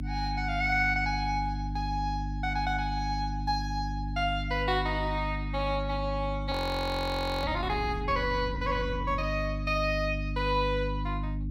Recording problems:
hum; 50 Hz, harmonics up to 300 Hz, SNR 4 dB
audio freezing; at 6.5 s for 1 s

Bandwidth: 16 kHz